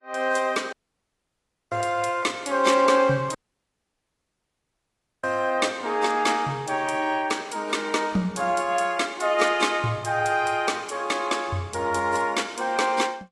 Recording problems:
lossy codec; AAC, log-spectral distance 3 dB, nothing above 11 kHz
audio cutting out; at 0.5 s for 1 s and at 3.5 s for 2 s

